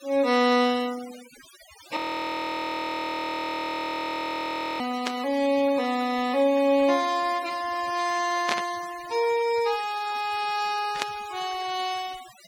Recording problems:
denoising artefacts; signal-to-artefact ratio 17 dB
audio freezing; at 2 s for 3 s
static burst; at 5 s, at 8.5 s and at 11 s; peak +3 dB vs average level

